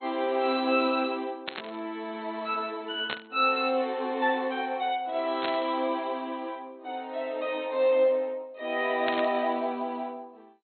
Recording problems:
lossy codec; MP2, log-spectral distance 3 dB, nothing above 3.7 kHz
burst of static; 4 times, first at 1.5 s; peak -1 dB vs average level

